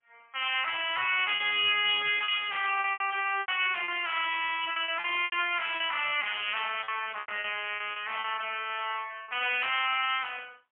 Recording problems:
phone line; 260 Hz to 3.3 kHz, AMR-NB, then MP3
lost packets; 9% of the sound replaced, filled with repeated pitch periods

